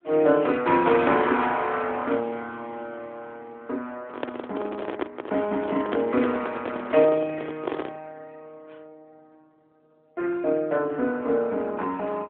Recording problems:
phone line; 260 Hz to 3.5 kHz, AMR-NB
microphone handling noise; from 4 to 8 s; peak +1 dB vs average level

